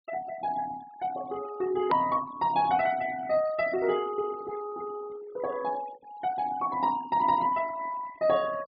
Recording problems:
treble cut off; nothing above 4.9 kHz
noise reduction artefacts; signal-to-artefact ratio 19 dB
click at an edit; at 2 s

